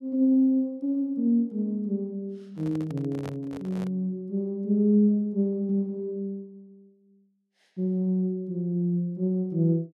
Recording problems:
microphone handling noise; from 2.5 to 4 s; peak -9 dB vs average level

